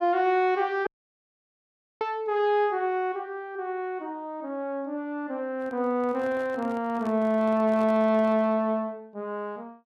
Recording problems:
audio cutting out; at 1 s for 1 s
microphone handling noise; from 5.5 to 8.5 s; peak -12 dB vs average level

